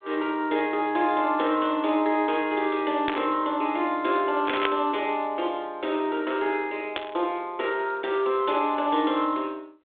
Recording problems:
telephone audio; 260 Hz to 3.7 kHz, G.726
static burst; at 3 s, at 4.5 s and at 7 s; peak +3 dB vs average level

